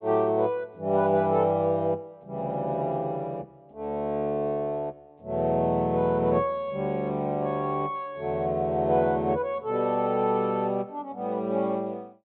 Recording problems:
treble missing; nothing above 4 kHz

